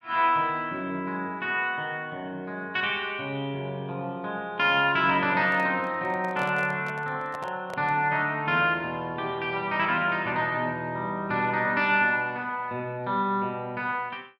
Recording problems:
handling noise; from 5.5 to 8 s; peak -7 dB vs average level

